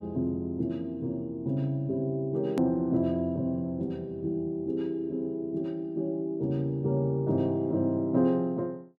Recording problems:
click at an edit; at 2.5 s

